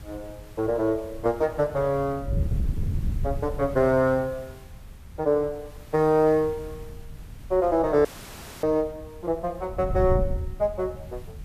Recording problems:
background hiss; slope -3 dB per octave, SNR 27 dB
wind on the microphone; below 110 Hz, SNR 9 dB
dropout; at 8 s for 0.5 s

